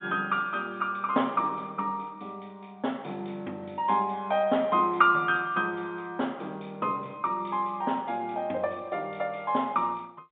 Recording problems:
telephone audio; 220 Hz to 3.6 kHz, G.711

